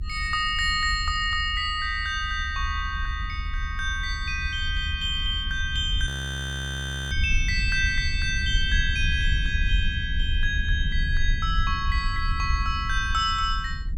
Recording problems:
low-frequency rumble; below 74 Hz, SNR 4 dB
audio freezing; at 6 s for 1 s

